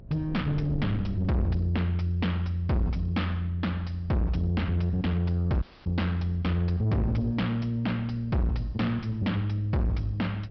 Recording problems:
low-pass filter; nothing above 5.5 kHz
distorted audio; soft clipping, signal-to-distortion ratio 6 dB
electrical hum; 60 Hz, harmonics up to 660 Hz, SNR 25 dB
wind noise; below 160 Hz, SNR 16 dB
audio cutting out; at 5.5 s

